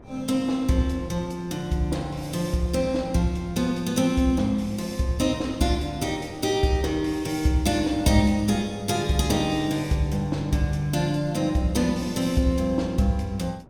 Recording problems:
wind noise; below 400 Hz, SNR 22 dB

